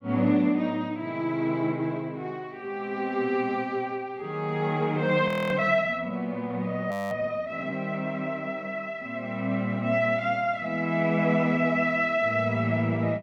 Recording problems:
frozen audio; at 5.5 s and at 7 s

